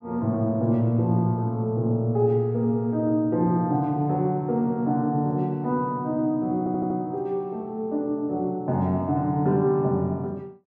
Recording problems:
audio stuttering; at 6.5 s

